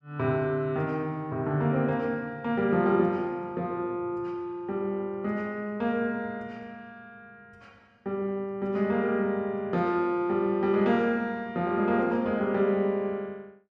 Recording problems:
none

